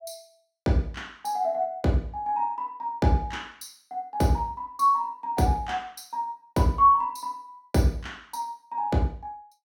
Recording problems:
none

